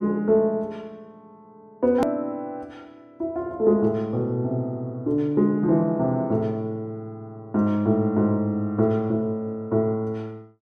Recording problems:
edit click; at 2 s

